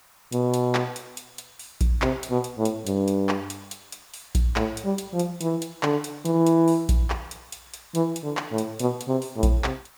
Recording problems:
hiss; SNR 27 dB

